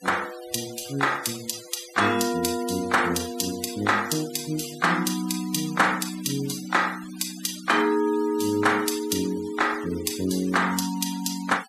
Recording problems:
denoising artefacts; signal-to-artefact ratio 15 dB

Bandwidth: 14.5 kHz